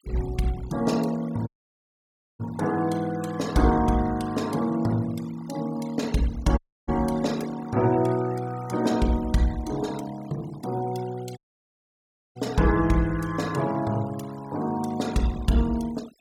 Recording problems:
noise reduction artefacts; signal-to-artefact ratio 19 dB
dropout; at 1.5 s for 1 s, at 6.5 s and at 11 s for 1 s

